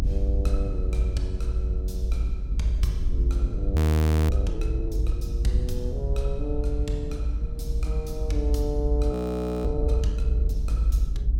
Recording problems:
rumble; below 78 Hz, SNR -7 dB
wind noise; below 210 Hz, SNR 11 dB
audio freezing; at 4 s for 0.5 s and at 9 s for 0.5 s

